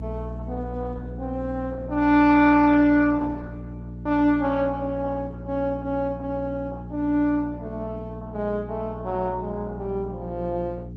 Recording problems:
codec artefacts; Opus, log-spectral distance 2 dB
electrical hum; 60 Hz, harmonics up to 420 Hz, SNR 10 dB

